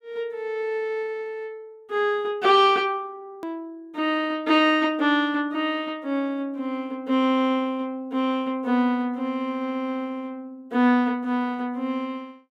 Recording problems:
click at an edit; at 3.5 s

